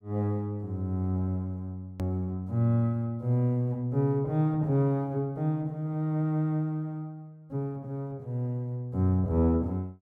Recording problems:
hard cut with a click; at 2 s

